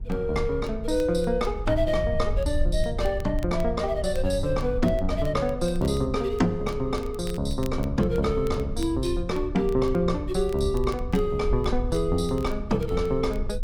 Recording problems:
low-frequency rumble; below 66 Hz, SNR 8 dB
crackling; vinyl, SNR 26 dB

